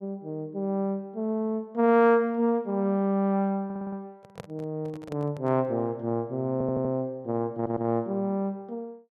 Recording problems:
audio stuttering; at 3.5 s, at 6.5 s and at 7.5 s
microphone handling noise; from 4 to 5.5 s; peak -8 dB vs average level

